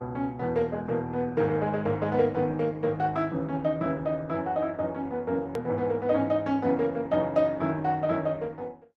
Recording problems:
lossy codec; Opus, log-spectral distance 2 dB, nothing above 13.1 kHz
click at an edit; at 5.5 s

